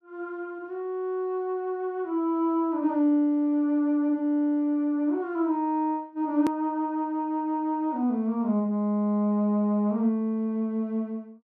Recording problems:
click at an edit; at 6.5 s

